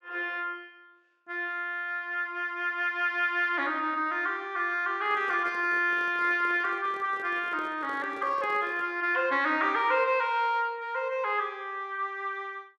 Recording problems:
microphone handling noise; from 5 to 9 s; peak -12 dB vs average level

